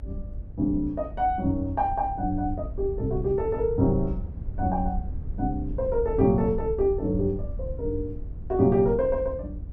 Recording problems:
rumble; below 80 Hz, SNR 10 dB

